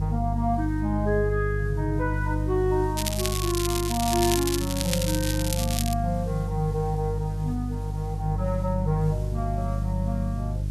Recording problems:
hum; 50 Hz, harmonics up to 350 Hz, SNR 1 dB
hiss; slope -1 dB per octave, SNR 25 dB
crackling; from 3 to 6 s; loose cable, SNR 2 dB

